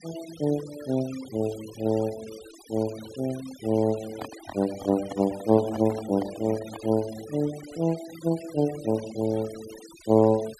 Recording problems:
noise reduction artefacts; signal-to-artefact ratio 18 dB
microphone handling noise; from 4 to 7 s; peak -5 dB vs average level

